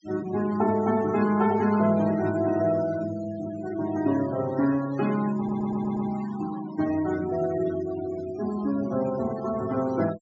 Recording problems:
treble cut off; nothing above 8 kHz
denoising artefacts; signal-to-artefact ratio 16 dB
audio stuttering; at 5.5 s

